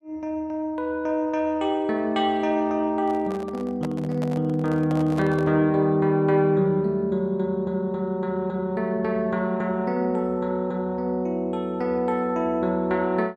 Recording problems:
microphone handling noise; from 3 to 5.5 s; peak -7 dB vs average level

